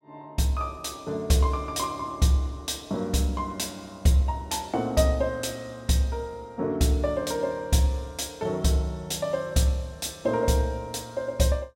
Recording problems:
none

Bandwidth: 16.5 kHz